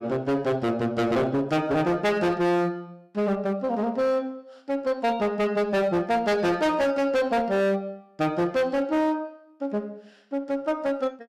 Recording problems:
distortion; hard clipping, signal-to-distortion ratio 6 dB

